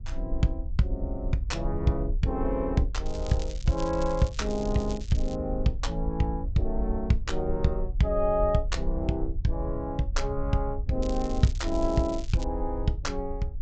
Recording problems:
treble cut off; nothing above 8 kHz
rumble; below 58 Hz, SNR 6 dB
crackling; from 3 to 5.5 s and from 11 to 12 s; loose cable, SNR 18 dB

